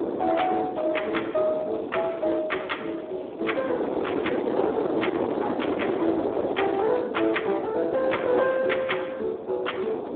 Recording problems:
phone line; 260 Hz to 3.4 kHz, Speex
distorted audio; hard clipping, signal-to-distortion ratio 11 dB
wind on the microphone; below 630 Hz, SNR 4 dB
crackle; from 1.5 to 5 s and from 5.5 to 7 s; loose cable, SNR 29 dB

